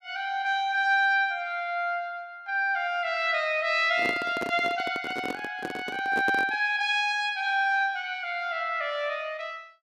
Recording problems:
handling noise; from 4 to 6.5 s; peak -2 dB vs average level

